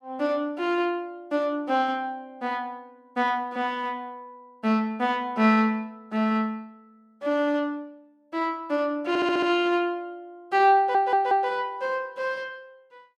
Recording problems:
audio stuttering; at 9 s and at 11 s

